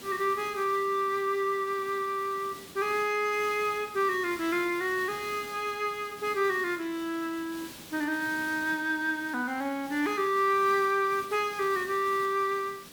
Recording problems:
background hiss; SNR 17 dB

